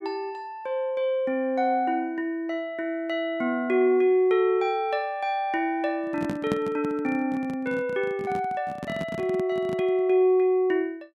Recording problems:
microphone handling noise; from 6 to 10 s; peak +1 dB vs average level

